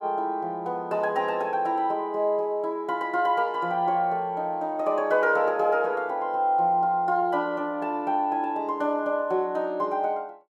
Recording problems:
none

